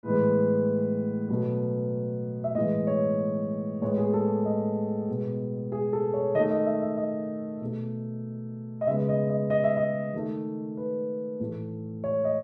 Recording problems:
none

